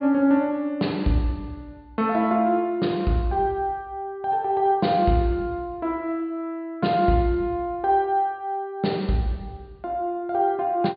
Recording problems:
low-pass filter; nothing above 4.8 kHz

